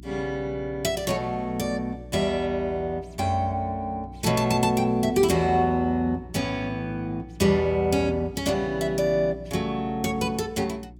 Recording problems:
electrical hum; 60 Hz, harmonics up to 360 Hz, SNR 19 dB

